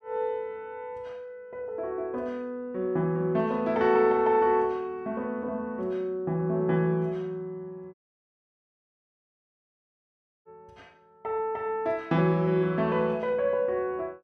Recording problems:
dropout; at 8 s for 2.5 s

